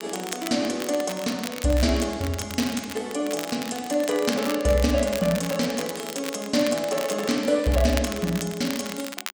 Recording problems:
crackling; vinyl, SNR 11 dB

